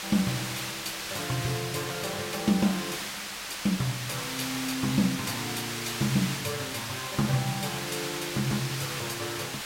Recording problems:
hiss; SNR 2 dB

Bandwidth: 16 kHz